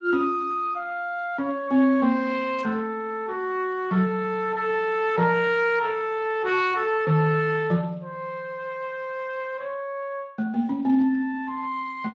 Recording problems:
codec artefacts; Speex, log-spectral distance 2 dB
burst of static; at 2.5 s; peak -16 dB vs average level

